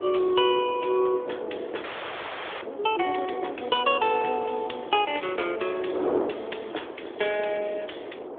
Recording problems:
phone line; 300 Hz to 3.6 kHz, AMR-NB
wind on the microphone; below 640 Hz, SNR 9 dB
audio freezing; at 2 s for 1 s

